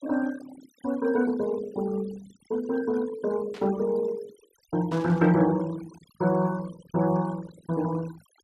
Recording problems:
denoising artefacts; signal-to-artefact ratio 18 dB
static burst; at 3.5 s and at 5 s; peak -13 dB vs average level

